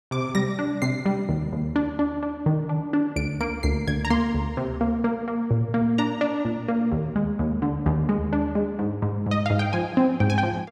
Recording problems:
none

